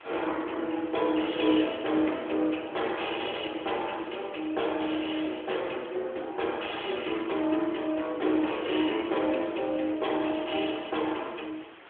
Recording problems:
telephone audio; 260 Hz to 3.4 kHz, AMR-NB
hiss; SNR 21 dB

